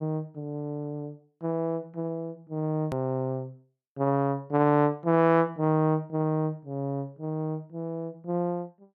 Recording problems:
hard cut with a click; at 3 s

